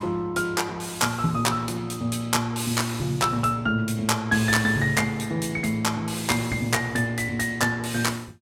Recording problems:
none

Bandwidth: 16.5 kHz